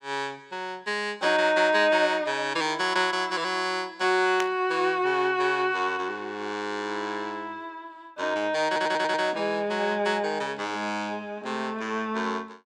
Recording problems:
burst of static; at 4.5 s; peak -1 dB vs average level
stutter; at 8.5 s

